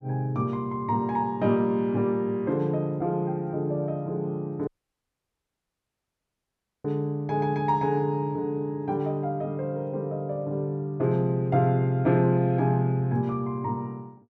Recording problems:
audio cutting out; at 4.5 s for 2 s

